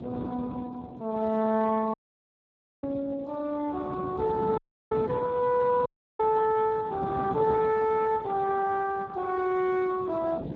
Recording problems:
codec artefacts; Speex, log-spectral distance 3 dB
wind noise; below 410 Hz, SNR 12 dB
audio cutting out; at 2 s for 1 s, at 4.5 s and at 6 s

